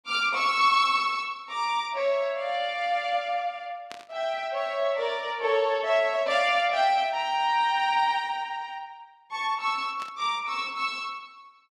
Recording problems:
static burst; at 4 s and at 10 s; peak -11 dB vs average level

